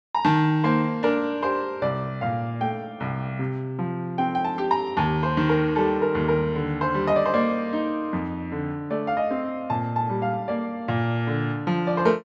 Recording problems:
none

